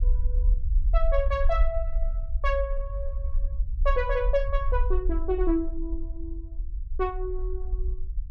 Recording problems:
low-frequency rumble; below 48 Hz, SNR 0 dB

